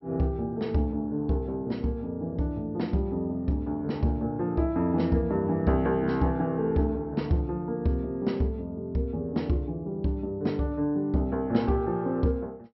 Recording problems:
treble cut off; nothing above 5.6 kHz

